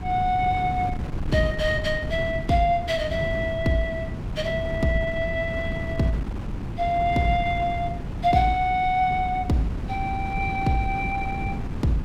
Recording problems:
wind on the microphone; below 210 Hz, SNR 7 dB

